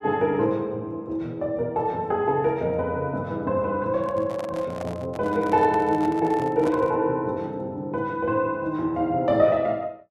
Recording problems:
handling noise; from 4 to 7 s; peak -6 dB vs average level

